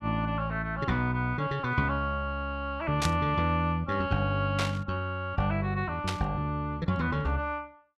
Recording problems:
static burst; at 3 s, at 4.5 s and at 6 s; peak +2 dB vs average level

